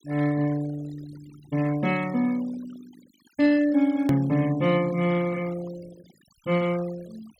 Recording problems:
denoising artefacts; signal-to-artefact ratio 20 dB
click at an edit; at 4 s

